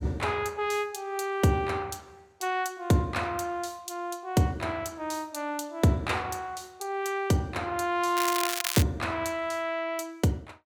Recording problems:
crackling; at 8 s; loose cable, SNR 1 dB

